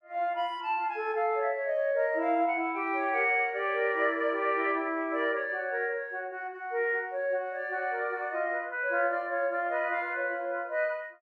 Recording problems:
none

